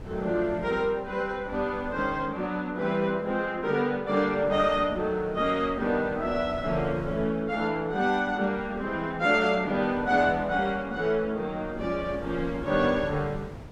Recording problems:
wind on the microphone; below 270 Hz, SNR 17 dB

